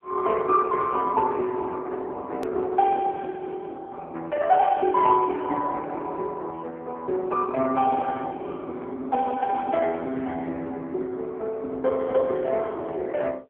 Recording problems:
phone line; 280 Hz to 2.3 kHz, AMR-NB
click at an edit; at 2.5 s

